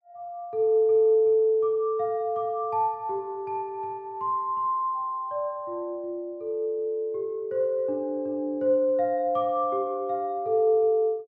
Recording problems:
none

